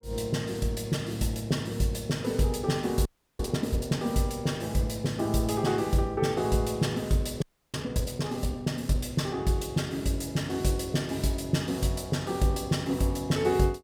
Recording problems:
audio freezing; at 3 s and at 7.5 s

